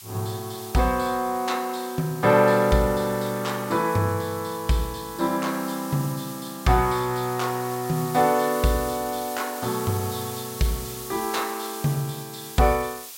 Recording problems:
background hiss; SNR 13 dB

